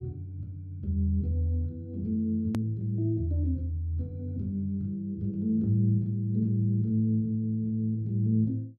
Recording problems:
hard cut with a click; at 2.5 s

